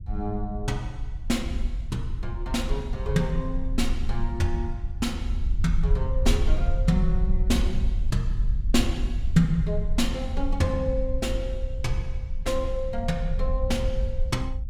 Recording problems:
rumble; below 58 Hz, SNR 1 dB

